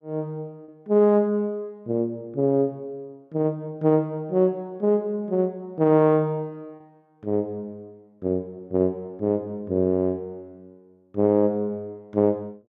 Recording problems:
lost packets; 0.4% of the sound replaced, filled with repeated pitch periods

